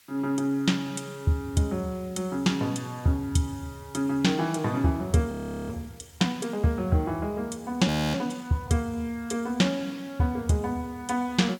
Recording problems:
hiss; SNR 27 dB
frozen audio; at 5.5 s and at 8 s

